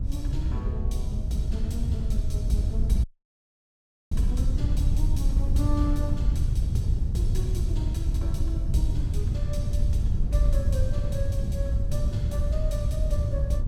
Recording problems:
wind noise; below 88 Hz, SNR -6 dB
audio cutting out; at 3 s for 1 s

